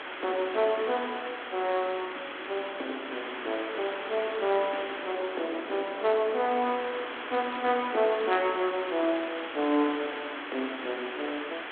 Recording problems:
telephone audio; 240 Hz to 3.5 kHz, G.726
background hiss; SNR 7 dB
wind on the microphone; below 980 Hz, SNR 18 dB

